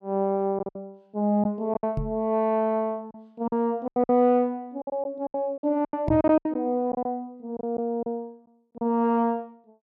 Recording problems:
lost packets; 11% of the sound replaced, filled with silence
microphone thump; at 2 s and at 6 s; peak 0 dB vs average level

